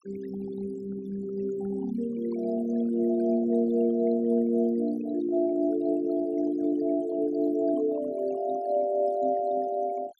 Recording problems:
denoising artefacts; signal-to-artefact ratio 18 dB

